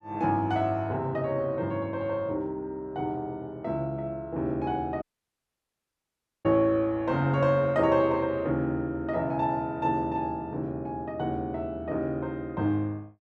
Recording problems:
dropout; at 5 s for 1.5 s

